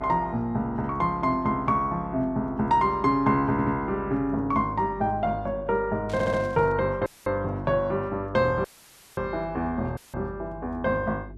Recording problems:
electrical hum; 50 Hz, harmonics up to 400 Hz, SNR 18 dB
stutter; at 3.5 s and at 6 s
static burst; at 6 s; peak -15 dB vs average level
audio cutting out; at 7 s, at 8.5 s for 0.5 s and at 10 s

